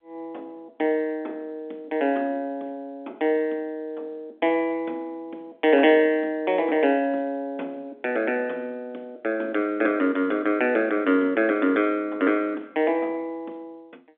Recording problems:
telephone audio; 220 Hz to 4 kHz, G.711

